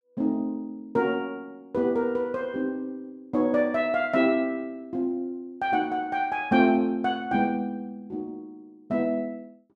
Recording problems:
none

